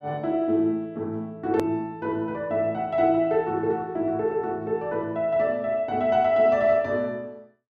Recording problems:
hard cut with a click; at 1.5 s

